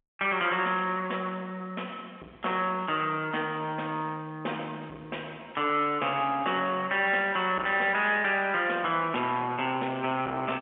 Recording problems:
telephone audio; 280 Hz to 3.5 kHz, G.711
distortion; soft clipping, signal-to-distortion ratio 12 dB

